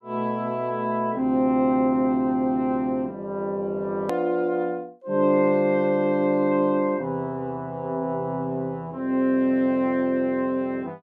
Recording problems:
edit click; at 4 s

